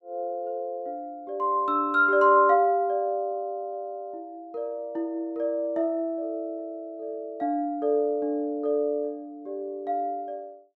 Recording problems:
none

